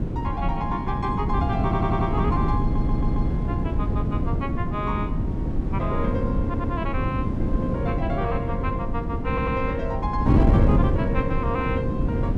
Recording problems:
wind on the microphone; below 230 Hz, SNR -5 dB
stutter; 4 times, first at 1.5 s

